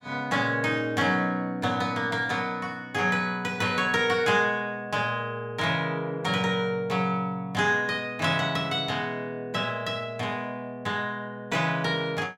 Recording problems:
none

